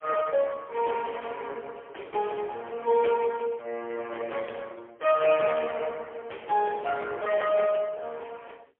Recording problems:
phone line; 340 Hz to 3.2 kHz, AMR-NB, then MP3

